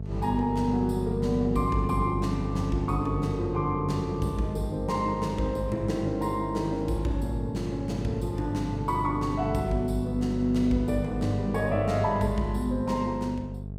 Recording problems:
electrical hum; 50 Hz, harmonics up to 500 Hz, SNR 6 dB

